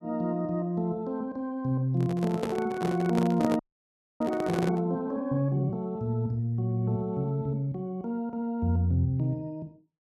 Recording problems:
handling noise; from 2 to 5 s; peak +2 dB vs average level
audio freezing; at 3.5 s for 0.5 s

